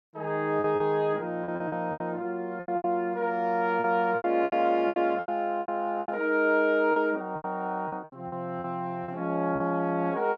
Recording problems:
packet loss; 13% of the sound replaced, filled with repeated pitch periods

